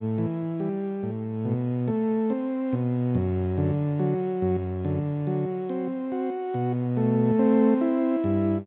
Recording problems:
treble missing; nothing above 4 kHz

